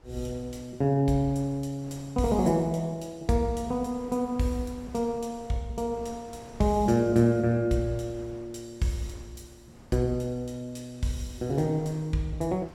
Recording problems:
wind noise; below 710 Hz, SNR 24 dB

